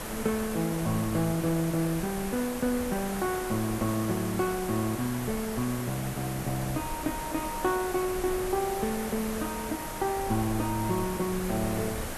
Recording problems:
background hiss; SNR 7 dB
low-frequency rumble; below 98 Hz, SNR 16 dB

